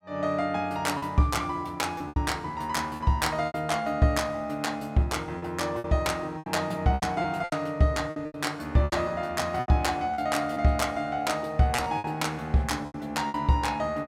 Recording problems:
lost packets; 9% of the sound replaced, filled with repeated pitch periods

